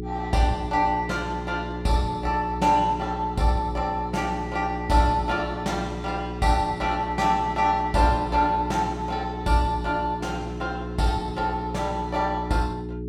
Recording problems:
hum; 60 Hz, harmonics up to 420 Hz, SNR 8 dB

